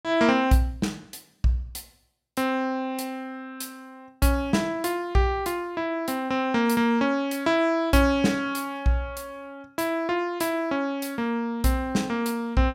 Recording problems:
none

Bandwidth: 16 kHz